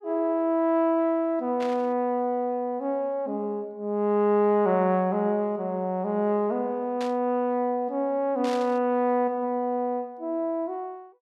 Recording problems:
burst of static; at 1.5 s, at 7 s and at 8.5 s; peak -9 dB vs average level

